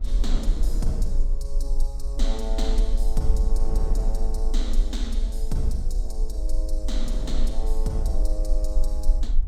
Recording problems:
rumble; below 38 Hz, strongest tone 20 Hz, SNR -7 dB
wind noise; below 330 Hz, SNR 8 dB

